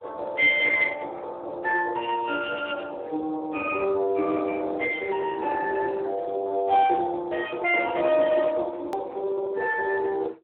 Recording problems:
telephone audio; 280 Hz to 2.8 kHz, Speex
hard cut with a click; at 9 s

